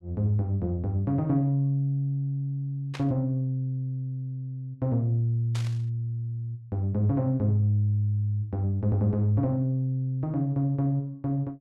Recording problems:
burst of static; at 3 s and at 5.5 s; peak -8 dB vs average level

